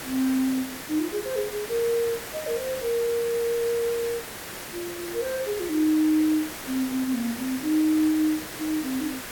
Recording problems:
hiss; slope -3 dB per octave, SNR 9 dB

